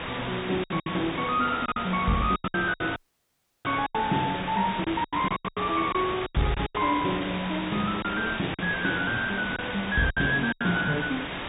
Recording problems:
treble missing; nothing above 3.8 kHz
distorted audio; soft clipping, signal-to-distortion ratio 10 dB
hiss; SNR 7 dB
packet loss; 11% of the sound replaced, filled with silence
dropout; at 3 s for 0.5 s

